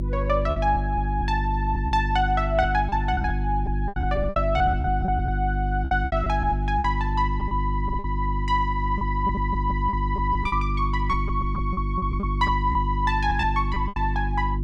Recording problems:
hum; 50 Hz, harmonics up to 350 Hz, SNR 1 dB
lost packets; 10% of the sound replaced, filled with repeated pitch periods

